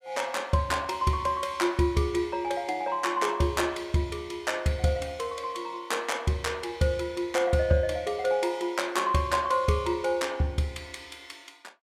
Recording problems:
none

